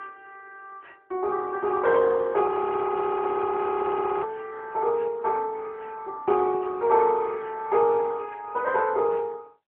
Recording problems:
phone line; 110 Hz to 3 kHz, AMR-NB
audio freezing; at 2.5 s for 2 s

